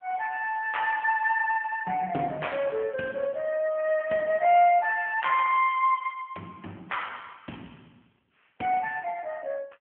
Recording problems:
phone line; 220 Hz to 3.1 kHz, AMR-NB

